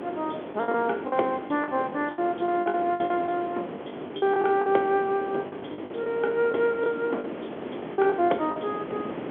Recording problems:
telephone audio; 260 Hz to 3.4 kHz, G.711
wind noise; below 650 Hz, SNR 10 dB
lost packets; 11% of the sound replaced, filled with the last packet

